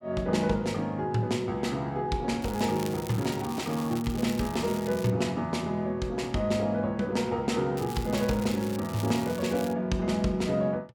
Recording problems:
crackle; from 2.5 to 5 s and from 8 to 9.5 s; loose cable, SNR 15 dB

